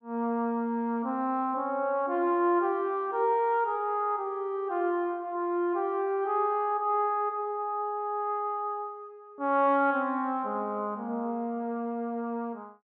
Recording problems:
none

